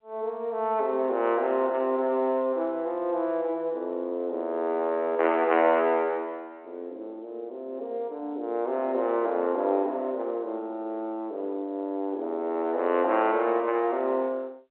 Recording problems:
phone line; 260 Hz to 3.1 kHz, G.711

